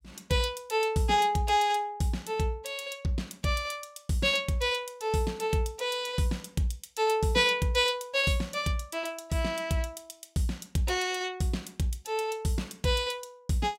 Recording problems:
none

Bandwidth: 16 kHz